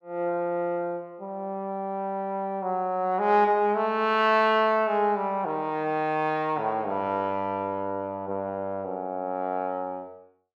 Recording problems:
none

